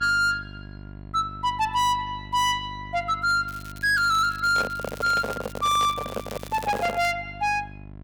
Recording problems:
distortion; soft clipping, signal-to-distortion ratio 10 dB
mains hum; 50 Hz, harmonics up to 1.1 kHz, SNR 17 dB
crackling; from 3.5 to 7 s; loose cable, SNR 21 dB
microphone handling noise; from 4.5 to 7 s; peak -1 dB vs average level

